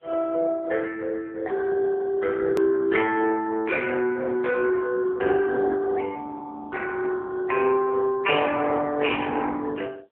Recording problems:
phone line; 340 Hz to 2.1 kHz, AMR-NB
distortion; soft clipping, signal-to-distortion ratio 15 dB
edit click; at 2.5 s

